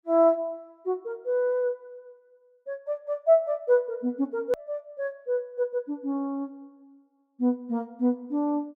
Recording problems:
edit click; at 4.5 s

